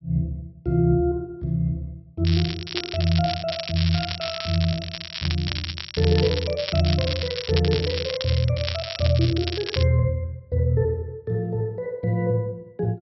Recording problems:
treble missing; nothing above 5.6 kHz
crackling; from 2 to 10 s; loose cable, SNR 6 dB

